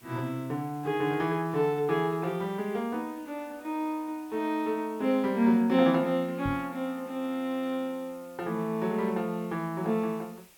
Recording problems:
background hiss; slope -1 dB per octave, SNR 26 dB
knock on the microphone; at 6.5 s; peak -2 dB vs average level

